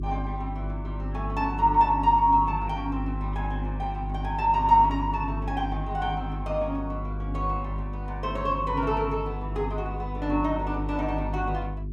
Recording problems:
electrical hum; 50 Hz, harmonics up to 400 Hz, SNR 6 dB

